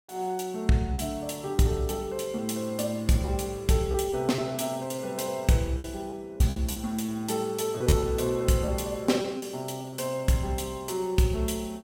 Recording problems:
lost packets; 5% of the sound replaced, filled with repeated pitch periods

